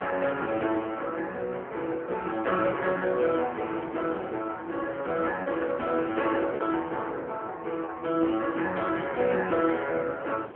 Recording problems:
telephone audio; 260 Hz to 3.3 kHz, AMR-NB
wind noise; below 970 Hz, SNR 21 dB
lost packets; 1.7% of the sound replaced, filled with repeated pitch periods

